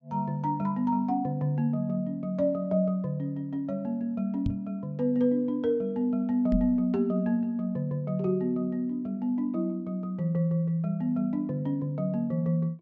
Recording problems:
treble cut off; nothing above 8 kHz
microphone thump; at 4.5 s and at 6.5 s; peak +2 dB vs average level

